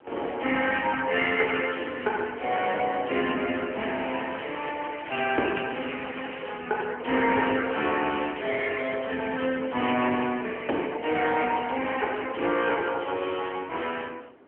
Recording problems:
phone line; 220 Hz to 3.1 kHz, AMR-NB
wind noise; below 860 Hz, SNR 22 dB
crackling; from 4 to 6.5 s; loose cable, SNR 14 dB

